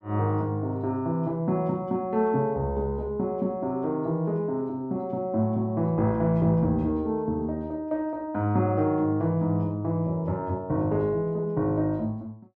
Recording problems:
none

